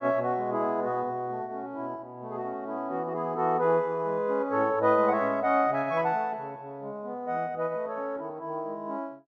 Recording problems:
none

